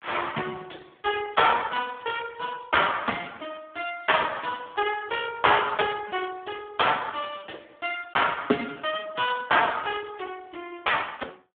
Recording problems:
phone line; 190 Hz to 3.4 kHz, Speex

